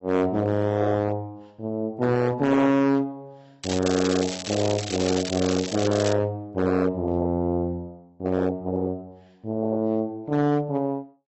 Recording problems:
lossy codec; AAC, log-spectral distance 4 dB, nothing above 7.8 kHz
distortion; hard clipping, signal-to-distortion ratio 11 dB
crackling; from 3.5 to 6 s; loose cable, SNR 9 dB

